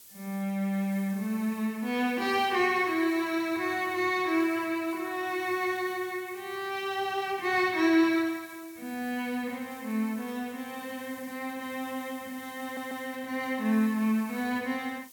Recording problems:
hiss; SNR 20 dB
audio stuttering; at 13 s

